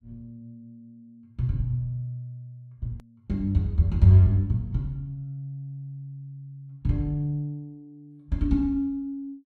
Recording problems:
click at an edit; at 3 s

